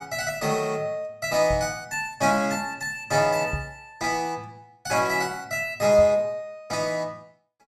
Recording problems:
microphone thump; at 1.5 s, at 3.5 s and at 6 s; peak -2 dB vs average level

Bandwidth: 14 kHz